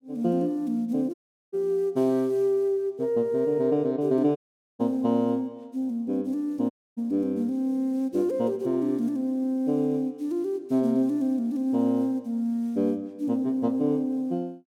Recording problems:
dropout; at 1 s, at 4.5 s and at 6.5 s

